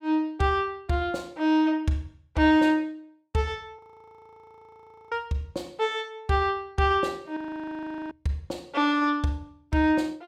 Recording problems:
audio freezing; at 4 s for 1.5 s and at 7.5 s for 0.5 s

